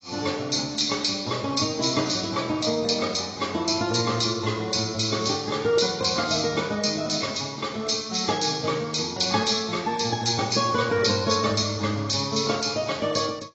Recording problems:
lossy codec; AAC, log-spectral distance 8 dB, nothing above 7.1 kHz

